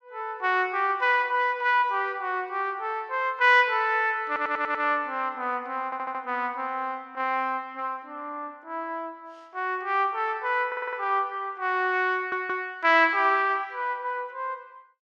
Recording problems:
audio stuttering; 4 times, first at 4.5 s

